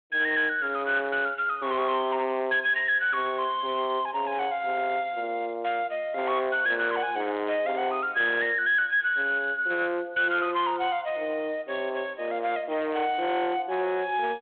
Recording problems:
phone line; 320 Hz to 3.7 kHz, G.726
distorted audio; hard clipping, signal-to-distortion ratio 12 dB

